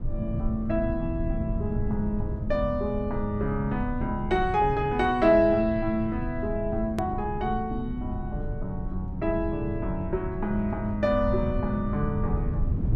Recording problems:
rumble; below 130 Hz, SNR 6 dB
hard cut with a click; at 7 s

